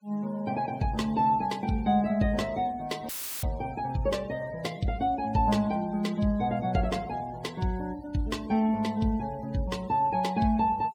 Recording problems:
noise reduction artefacts; signal-to-artefact ratio 22 dB
dropout; at 3 s; filled with static

